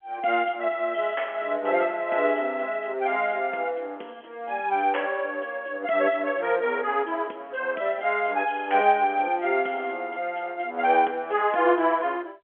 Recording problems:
telephone audio; 260 Hz to 3.4 kHz, G.711

